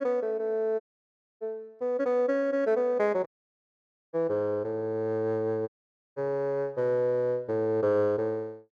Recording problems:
dropout; at 1 s for 0.5 s, at 3.5 s for 1 s and at 5.5 s

